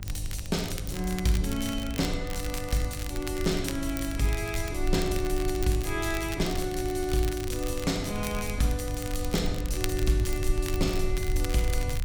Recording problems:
hum; 50 Hz, harmonics up to 600 Hz, SNR 11 dB
low-frequency rumble; below 62 Hz, SNR 6 dB
crackle; vinyl, SNR 11 dB

